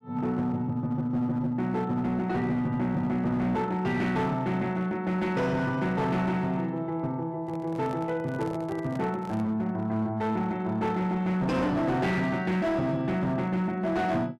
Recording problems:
distortion; hard clipping, uneven, signal-to-distortion ratio 11 dB
handling noise; from 7.5 to 9.5 s; peak -5 dB vs average level

